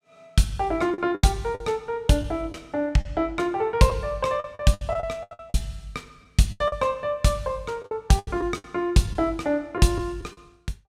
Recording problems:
packet loss; 11% of the sound replaced, filled with the last packet

